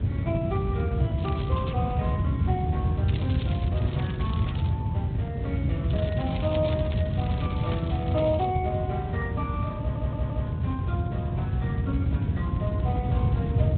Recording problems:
treble cut off; nothing above 3.7 kHz
lossy codec; MP3, then Speex, log-spectral distance 2 dB
wind on the microphone; below 150 Hz, SNR -6 dB
crackle; at 1 s, from 3 to 4.5 s and from 6 to 8.5 s; loose cable, SNR 11 dB
stutter; at 10 s

